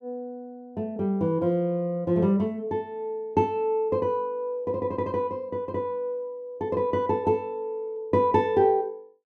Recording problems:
none

